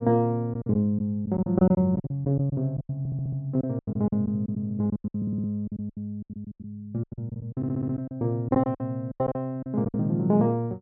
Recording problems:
packet loss; 17% of the sound replaced, filled with silence
stutter; at 3 s, at 5 s and at 7.5 s

